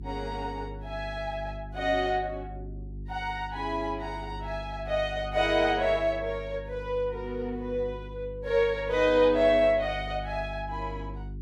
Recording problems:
mains hum; 50 Hz, harmonics up to 400 Hz, SNR 13 dB

